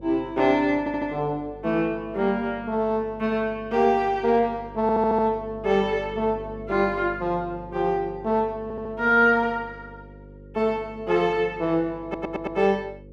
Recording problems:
electrical hum; 50 Hz, harmonics up to 550 Hz, SNR 20 dB
stutter; 4 times, first at 1 s

